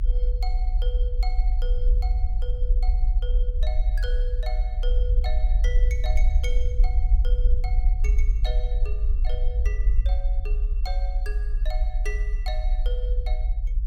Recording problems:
low-frequency rumble; below 48 Hz, strongest tone 30 Hz, SNR -14 dB

